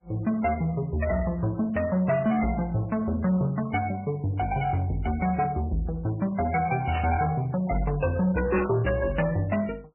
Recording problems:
lossy codec; MP3, log-spectral distance 2 dB
distorted audio; soft clipping, signal-to-distortion ratio 12 dB
static burst; at 7 s and at 8.5 s; peak -1 dB vs average level

